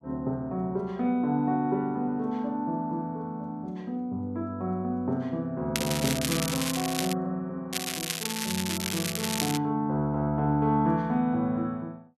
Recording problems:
crackling; from 6 to 7 s and from 7.5 to 9.5 s; loose cable, SNR 2 dB

